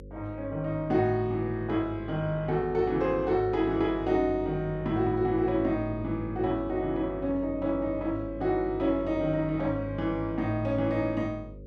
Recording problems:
electrical hum; 50 Hz, harmonics up to 550 Hz, SNR 14 dB

